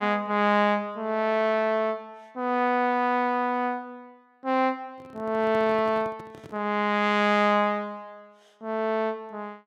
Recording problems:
handling noise; from 5 to 6.5 s; peak -13 dB vs average level

